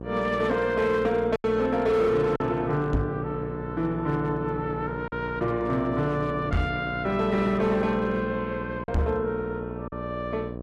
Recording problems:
codec artefacts; Opus, log-spectral distance 2 dB, nothing above 13.1 kHz
distortion; hard clipping, signal-to-distortion ratio 12 dB
hum; 60 Hz, harmonics up to 1.3 kHz, SNR 9 dB
packet loss; 2% of the sound replaced, filled with silence
microphone thump; at 3 s, at 6.5 s and at 9 s; peak +5 dB vs average level

